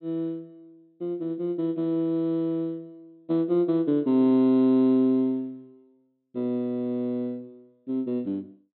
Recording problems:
low-pass filter; nothing above 4.1 kHz

